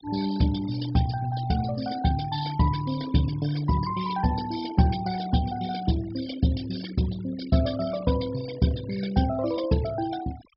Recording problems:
treble missing; nothing above 5.3 kHz
noise reduction artefacts; signal-to-artefact ratio 16 dB

